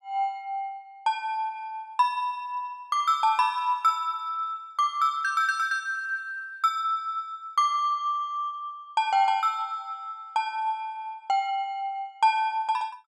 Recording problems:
none

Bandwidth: 13.5 kHz